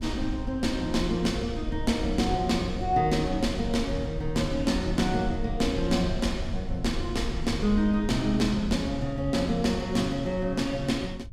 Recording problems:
rumble; below 82 Hz, SNR 9 dB

